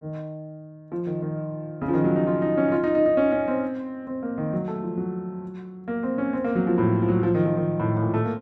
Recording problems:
none

